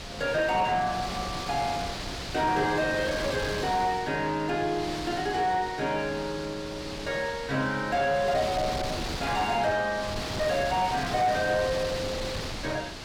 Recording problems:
distortion; soft clipping, signal-to-distortion ratio 4 dB
wind on the microphone; below 4.1 kHz, SNR 7 dB

